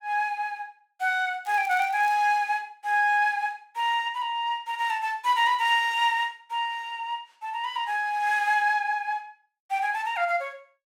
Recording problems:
crackling; at 1.5 s; loose cable, SNR 25 dB

